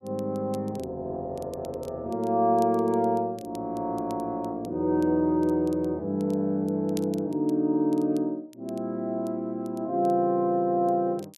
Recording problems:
crackling; vinyl, SNR 27 dB

